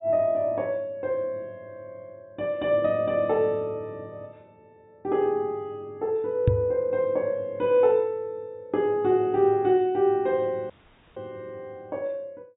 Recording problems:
treble missing; nothing above 4 kHz
microphone bump; at 6.5 s; peak +7 dB vs average level
dropout; at 11 s

